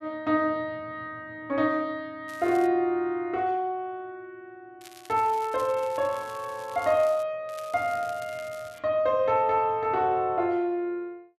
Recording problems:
crackle; at 2.5 s, from 5 to 7 s and from 7.5 to 9 s; loose cable, SNR 22 dB

